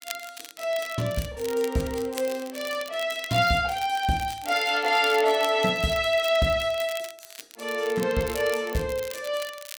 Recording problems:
crackle; vinyl, SNR 16 dB

